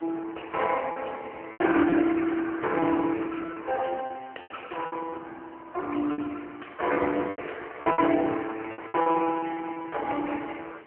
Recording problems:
telephone audio; 260 Hz to 3.1 kHz, AMR-NB
hiss; SNR 26 dB
lost packets; 9% of the sound replaced, filled with repeated pitch periods

